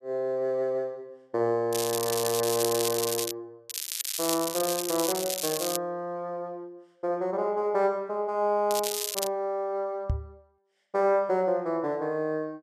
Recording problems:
crackling; from 1.5 to 3.5 s, from 3.5 to 6 s and at 8.5 s; loose cable, SNR 2 dB
microphone bump; at 10 s; peak +4 dB vs average level

